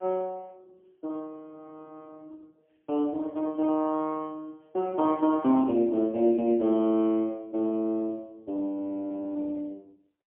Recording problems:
telephone audio; 220 Hz to 3.3 kHz, AMR-NB, then MP3

